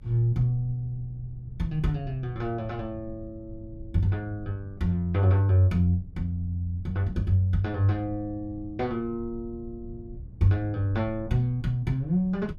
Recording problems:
rumble; below 100 Hz, SNR 17 dB

